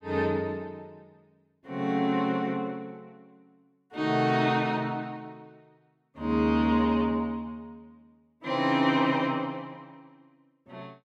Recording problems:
none

